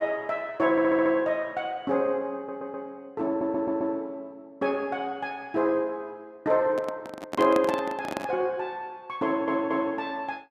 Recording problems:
audio stuttering; 4 times, first at 0.5 s
microphone handling noise; from 6.5 to 8.5 s; peak 0 dB vs average level

